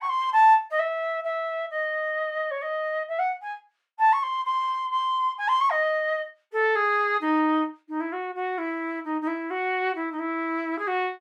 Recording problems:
none

